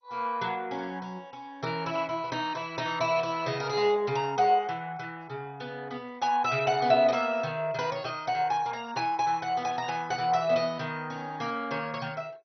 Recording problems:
lossy codec; MP2, log-spectral distance 4 dB, nothing above 5.8 kHz

